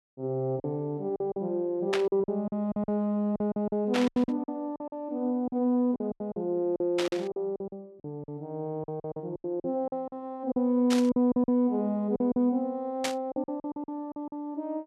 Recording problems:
packet loss; 14% of the sound replaced, filled with silence
static burst; 5 times, first at 2 s; peak +3 dB vs average level

